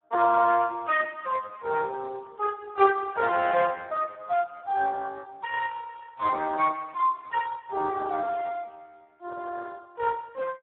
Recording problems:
telephone audio; 280 Hz to 2.5 kHz, Speex

